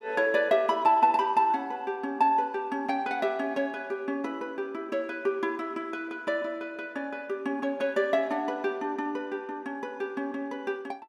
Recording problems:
none

